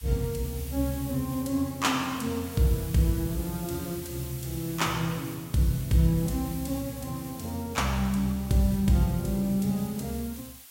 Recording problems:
hiss; slope +3 dB per octave, SNR 14 dB

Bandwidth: 16 kHz